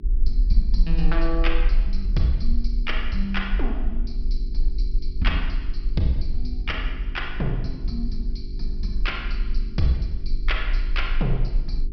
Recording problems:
treble cut off; nothing above 5.5 kHz
electrical hum; 50 Hz, harmonics up to 400 Hz, SNR 12 dB
rumble; below 40 Hz, strongest tone 18 Hz, SNR -1 dB

